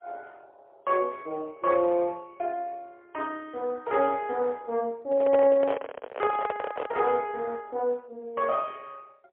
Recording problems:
phone line; 300 Hz to 3.3 kHz, AMR-NB, then MP3
microphone handling noise; from 5 to 7 s; peak +3 dB vs average level

